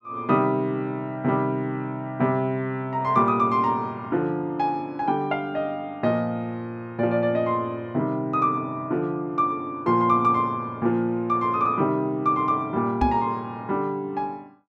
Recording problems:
microphone bump; at 13 s; peak +4 dB vs average level

